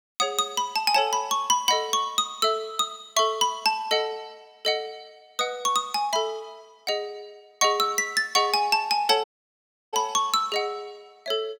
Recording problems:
dropout; at 9 s for 0.5 s

